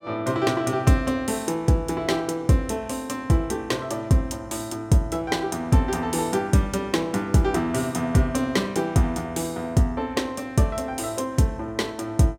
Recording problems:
none

